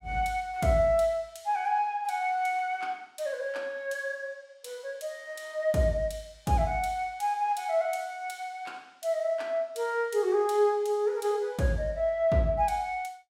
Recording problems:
none

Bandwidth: 16 kHz